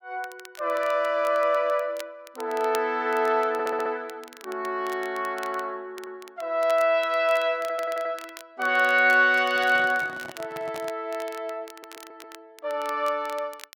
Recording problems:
crackling; vinyl, SNR 21 dB
audio stuttering; 4 times, first at 3.5 s
handling noise; from 9.5 to 11 s; peak -11 dB vs average level

